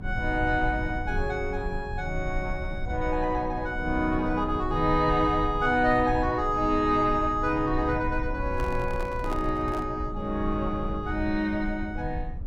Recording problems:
low-frequency rumble; below 80 Hz, strongest tone 26 Hz, SNR 9 dB
handling noise; from 8.5 to 10 s; peak -5 dB vs average level

